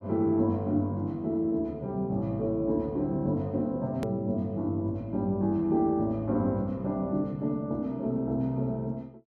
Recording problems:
hard cut with a click; at 4 s

